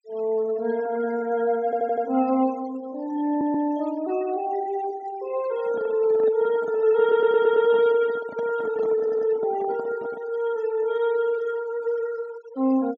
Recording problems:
treble cut off; nothing above 8 kHz
denoising artefacts; signal-to-artefact ratio 22 dB
audio stuttering; 4 times, first at 1.5 s
microphone handling noise; from 5.5 to 10 s; peak -10 dB vs average level

